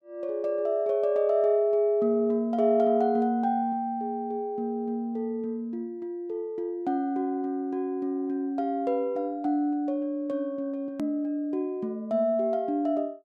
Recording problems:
edit click; at 11 s

